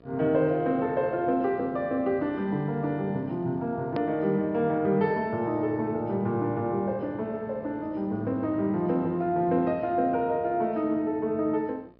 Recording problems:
treble missing; nothing above 5.5 kHz
mains hum; 60 Hz, harmonics up to 1.9 kHz, SNR 28 dB
hard cut with a click; at 4 s

